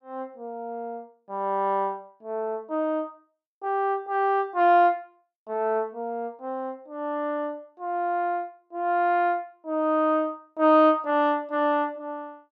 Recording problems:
none

